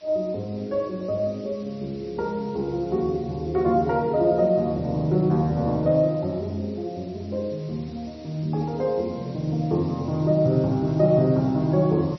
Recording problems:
codec artefacts; MP3, log-spectral distance 4 dB, nothing above 5.2 kHz
background hiss; slope 0 dB per octave, SNR 27 dB

